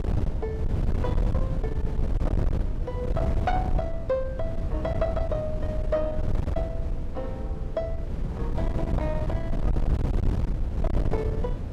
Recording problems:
distorted audio; soft clipping, signal-to-distortion ratio 8 dB
wind on the microphone; below 120 Hz, SNR -4 dB

